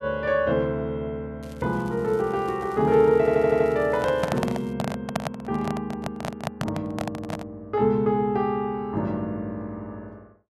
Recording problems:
crackle; from 1.5 to 4.5 s; loose cable, SNR 28 dB
audio stuttering; at 3 s
handling noise; from 4 to 7.5 s; peak +2 dB vs average level

